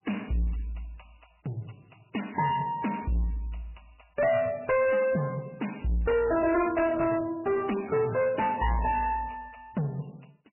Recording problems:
lossy codec; MP3, log-spectral distance 6 dB, nothing above 2.4 kHz
distortion; soft clipping, signal-to-distortion ratio 6 dB

